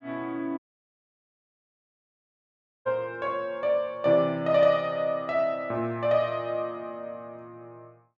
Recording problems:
audio cutting out; at 0.5 s for 2.5 s

